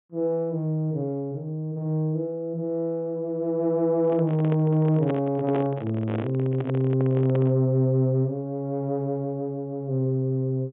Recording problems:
treble missing; nothing above 3.5 kHz
microphone handling noise; from 4 to 7.5 s; peak -2 dB vs average level

